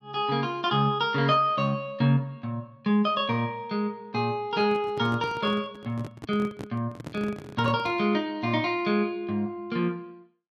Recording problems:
handling noise; from 4.5 to 8 s; peak -7 dB vs average level

